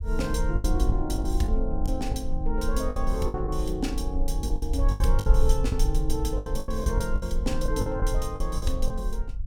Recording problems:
rumble; below 54 Hz, SNR -2 dB
packet loss; 11% of the sound replaced, filled with the last packet

